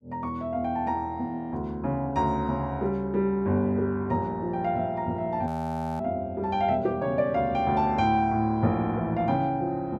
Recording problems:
audio freezing; at 5.5 s for 0.5 s

